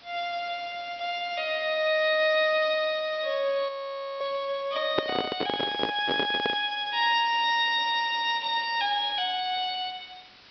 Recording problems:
low-pass filter; nothing above 5.5 kHz
hiss; SNR 25 dB
audio freezing; at 3.5 s for 0.5 s
handling noise; from 5 to 6.5 s; peak +4 dB vs average level

